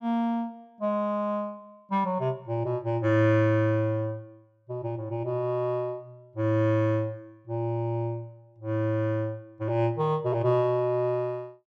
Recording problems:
none

